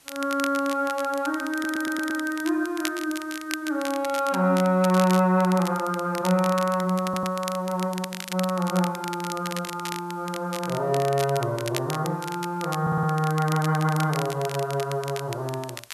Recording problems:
background hiss; slope -1 dB per octave, SNR 28 dB
crackle; vinyl, SNR 12 dB
audio stuttering; at 1.5 s, at 7 s and at 13 s

